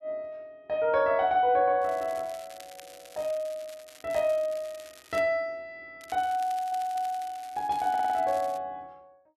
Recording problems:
crackle; from 2 to 5 s and from 6 to 8.5 s; loose cable, SNR 21 dB
stutter; at 6.5 s and at 8 s

